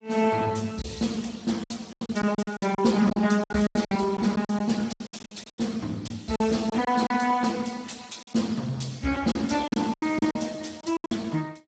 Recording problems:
lossy compression; Speex, log-spectral distance 6 dB, nothing above 7.6 kHz
packet loss; 13% of the sound replaced, filled with silence

